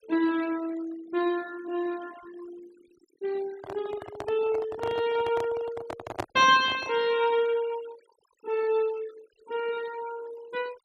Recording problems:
denoising artefacts; signal-to-artefact ratio 20 dB
microphone handling noise; from 3.5 to 7 s; peak +1 dB vs average level

